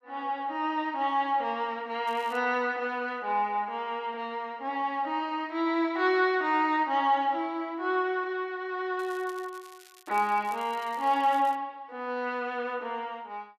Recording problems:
crackling; at 2 s and from 9 to 12 s; loose cable, SNR 24 dB

